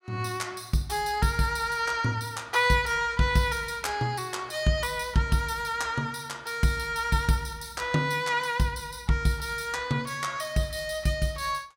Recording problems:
none

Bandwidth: 16.5 kHz